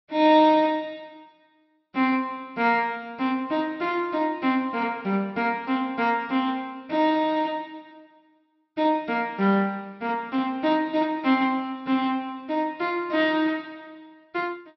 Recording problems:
treble cut off; nothing above 5.6 kHz

